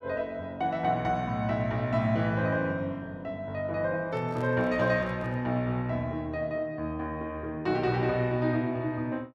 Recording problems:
microphone handling noise; from 4 to 5.5 s; peak -11 dB vs average level

